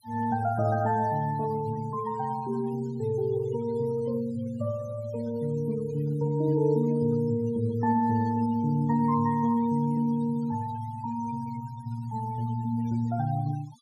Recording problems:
noise reduction artefacts; signal-to-artefact ratio 22 dB

